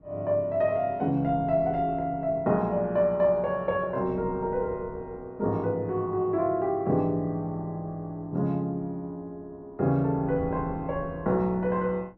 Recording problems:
wind on the microphone; below 360 Hz, SNR 18 dB

